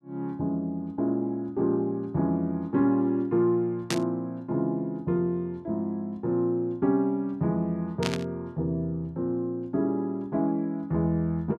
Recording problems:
burst of static; at 4 s and at 8 s; peak +2 dB vs average level

